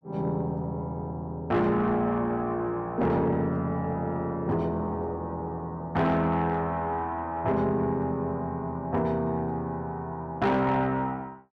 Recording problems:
distortion; soft clipping, signal-to-distortion ratio 11 dB

